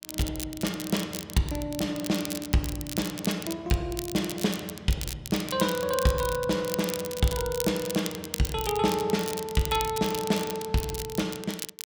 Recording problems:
crackling; vinyl, SNR 8 dB

